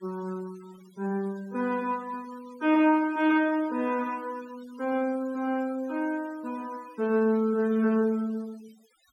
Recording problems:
noise reduction artefacts; signal-to-artefact ratio 25 dB

